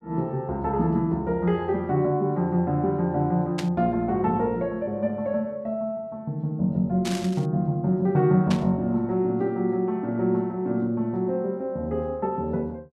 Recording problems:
burst of static; at 3.5 s, at 7 s and at 8.5 s; peak -4 dB vs average level

